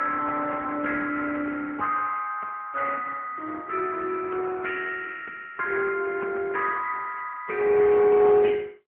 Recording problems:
phone line; 190 Hz to 2.8 kHz, AMR-NB

